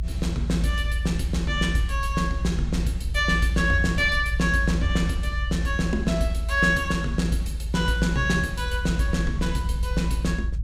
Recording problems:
low-frequency rumble; below 72 Hz, strongest tone 54 Hz, SNR 4 dB

